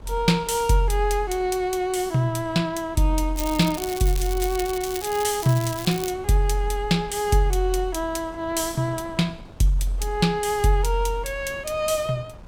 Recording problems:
wind on the microphone; below 360 Hz, SNR 21 dB
crackling; from 3.5 to 6 s; loose cable, SNR 11 dB

